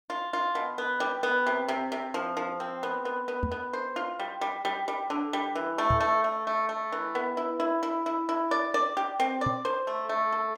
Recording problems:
knock on the microphone; at 3.5 s, at 6 s and at 9.5 s; peak +2 dB vs average level

